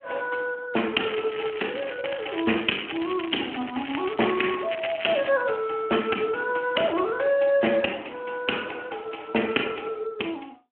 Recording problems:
phone line; 240 Hz to 3.2 kHz, Speex
crackling; from 1 to 5.5 s; loose cable, SNR 9 dB

